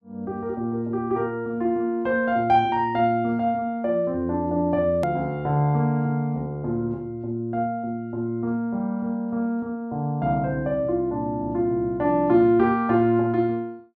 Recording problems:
click at an edit; at 5 s

